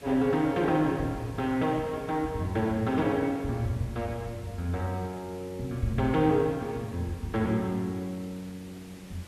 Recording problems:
background hiss; slope -3 dB per octave, SNR 21 dB

